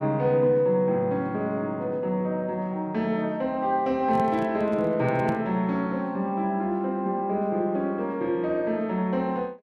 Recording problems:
microphone handling noise; from 4 to 5.5 s; peak -3 dB vs average level

